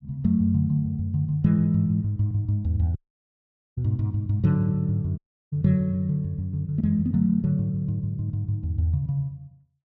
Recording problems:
audio cutting out; at 3 s for 1 s and at 5 s

